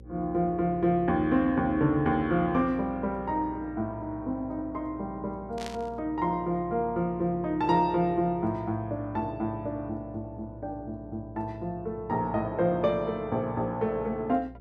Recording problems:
electrical hum; 60 Hz, harmonics up to 540 Hz, SNR 19 dB
burst of static; at 5.5 s; peak -7 dB vs average level

